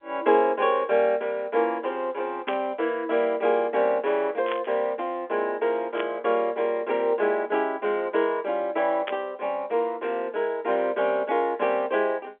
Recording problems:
phone line; 340 Hz to 3.5 kHz, G.711
static burst; 4 times, first at 2.5 s; peak -2 dB vs average level

